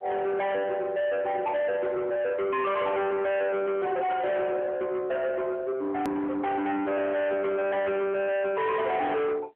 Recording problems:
phone line; 990 Hz to 3.2 kHz, AMR-NB
distorted audio; soft clipping, signal-to-distortion ratio 6 dB
hard cut with a click; at 6 s

